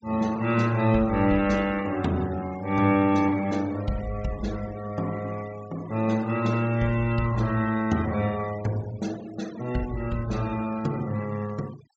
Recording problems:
treble missing; nothing above 8 kHz
denoising artefacts; signal-to-artefact ratio 20 dB

